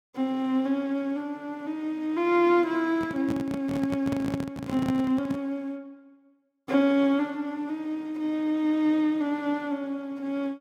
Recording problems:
microphone handling noise; from 3 to 5.5 s; peak -1 dB vs average level

